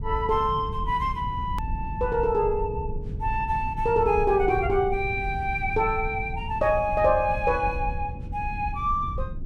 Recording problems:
low-frequency rumble; below 110 Hz, SNR 9 dB
edit click; at 1.5 s

